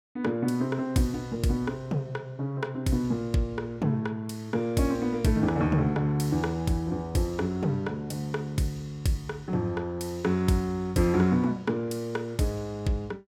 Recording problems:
none

